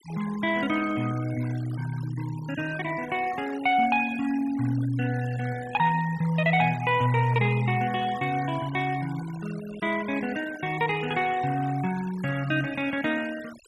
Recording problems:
noise reduction artefacts; signal-to-artefact ratio 17 dB

